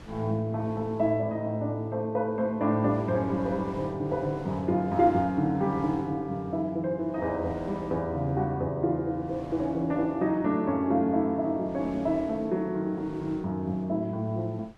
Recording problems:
wind noise; below 860 Hz, SNR 22 dB

